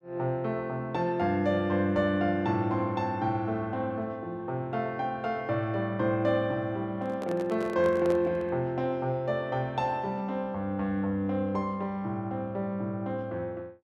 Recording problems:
microphone handling noise; from 7 to 8.5 s; peak -3 dB vs average level

